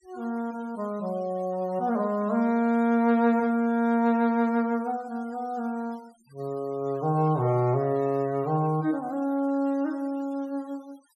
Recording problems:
noise reduction artefacts; signal-to-artefact ratio 27 dB

